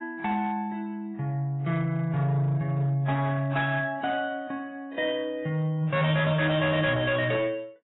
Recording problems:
codec artefacts; AAC, then AAC, log-spectral distance 2 dB, nothing above 3.4 kHz
distorted audio; hard clipping, signal-to-distortion ratio 11 dB

